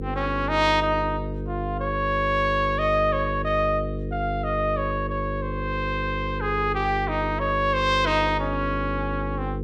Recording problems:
hum; 50 Hz, harmonics up to 500 Hz, SNR 6 dB

